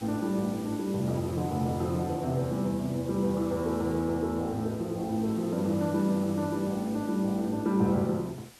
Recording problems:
background hiss; slope -1 dB per octave, SNR 20 dB

